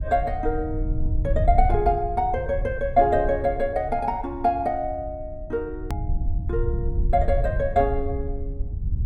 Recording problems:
low-frequency rumble; below 80 Hz, SNR 5 dB
click at an edit; at 6 s

